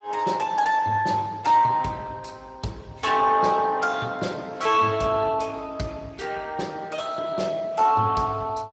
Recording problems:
lossy compression; Speex, log-spectral distance 4 dB, nothing above 7.6 kHz

